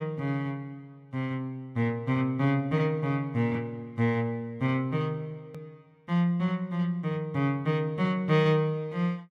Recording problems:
edit click; at 5.5 s

